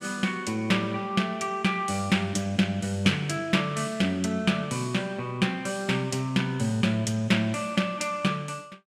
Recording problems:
none

